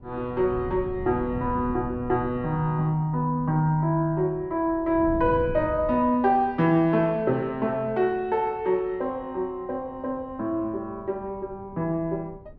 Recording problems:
wind noise; below 180 Hz, SNR 15 dB

